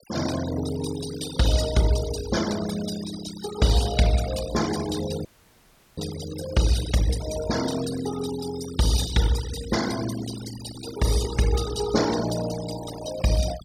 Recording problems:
denoising artefacts; signal-to-artefact ratio 9 dB
dropout; at 5.5 s for 0.5 s

